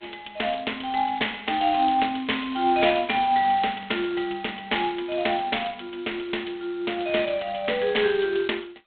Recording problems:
telephone audio; 280 Hz to 3.7 kHz, G.726
crackle; from 1 to 4 s; loose cable, SNR 24 dB

